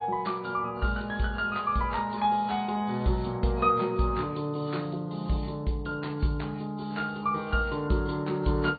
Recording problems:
treble cut off; nothing above 4.5 kHz
codec artefacts; AAC, log-spectral distance 4 dB

